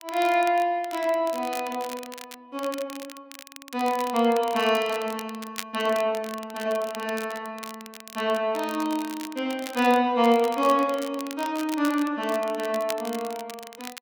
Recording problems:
crackle; vinyl, SNR 15 dB

